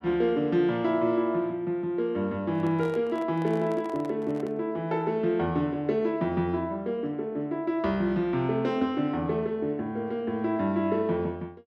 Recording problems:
handling noise; from 2.5 to 4.5 s; peak -11 dB vs average level

